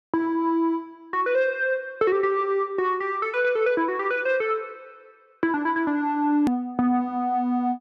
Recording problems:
hard cut with a click; at 6.5 s

